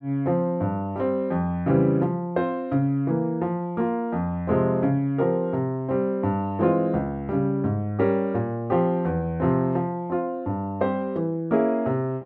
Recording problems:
none

